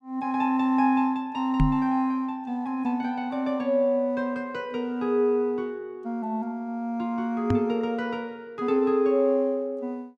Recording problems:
knock on the microphone; at 1.5 s and at 7.5 s; peak +6 dB vs average level

